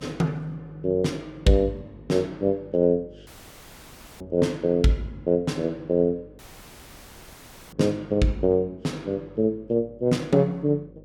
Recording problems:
electrical hum; 50 Hz, harmonics up to 550 Hz, SNR 26 dB
dropout; at 3.5 s for 1 s and at 6.5 s for 1.5 s

